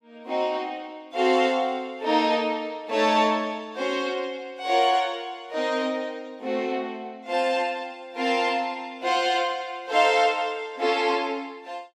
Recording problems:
none

